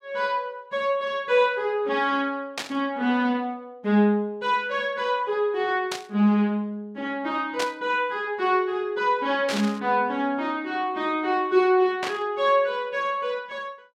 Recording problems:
static burst; 5 times, first at 2.5 s; peak -1 dB vs average level

